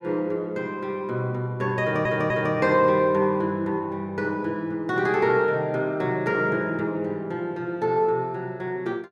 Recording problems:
audio stuttering; at 2 s

